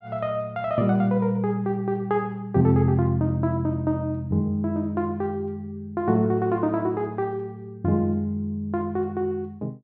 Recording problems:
none

